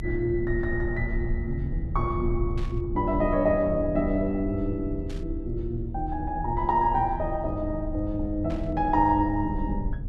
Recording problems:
low-frequency rumble; below 76 Hz, strongest tone 32 Hz, SNR 7 dB
burst of static; at 2.5 s, at 5 s and at 8.5 s; peak -14 dB vs average level

